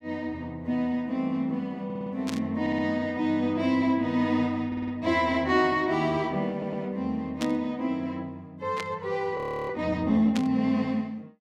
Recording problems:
audio stuttering; 4 times, first at 2 s
burst of static; 4 times, first at 2.5 s; peak -3 dB vs average level
audio freezing; at 9.5 s

